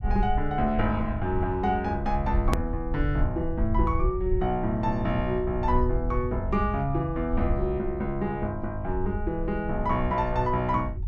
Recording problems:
low-frequency rumble; below 70 Hz, SNR 5 dB
hard cut with a click; at 2.5 s

